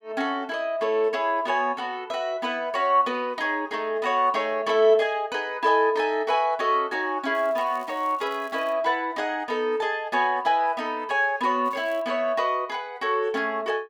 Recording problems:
crackling; from 7.5 to 8.5 s and at 12 s; loose cable, SNR 28 dB

